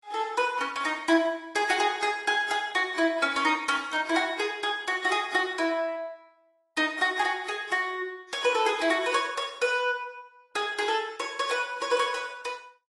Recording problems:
lossy codec; AAC, log-spectral distance 4 dB, nothing above 11 kHz

